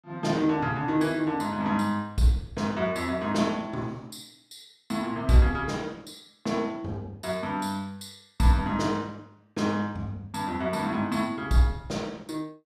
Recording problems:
none

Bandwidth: 15 kHz